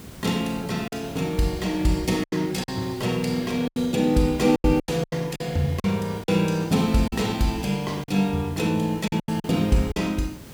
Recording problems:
background hiss; SNR 18 dB
lost packets; 9% of the sound replaced, filled with silence

